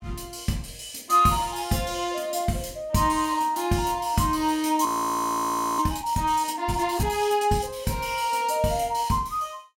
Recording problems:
audio freezing; at 5 s for 1 s

